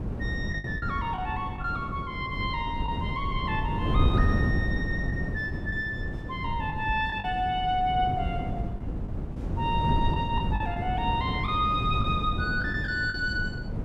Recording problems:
wind noise; below 200 Hz, SNR 1 dB
lost packets; 4% of the sound replaced, filled with the last packet

